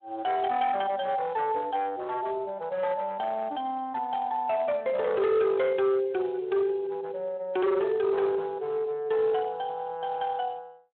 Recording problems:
telephone audio; 320 Hz to 3.3 kHz, Speex
distorted audio; hard clipping, signal-to-distortion ratio 12 dB

